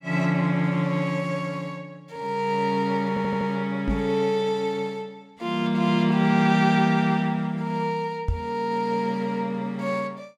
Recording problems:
stutter; at 3 s
microphone thump; at 4 s and at 8.5 s; peak +2 dB vs average level

